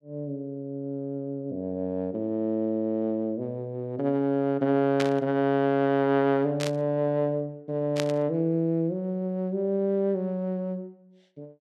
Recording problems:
burst of static; at 5 s, at 6.5 s and at 8 s; peak 0 dB vs average level

